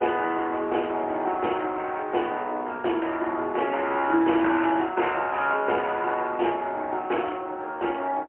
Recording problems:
telephone audio; 280 Hz to 3.1 kHz, AMR-NB, then MP3

